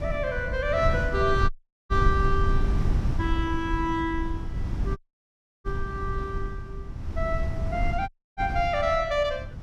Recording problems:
wind on the microphone; below 100 Hz, SNR 2 dB
dropout; at 1.5 s, at 5 s for 0.5 s and at 8 s

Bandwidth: 14.5 kHz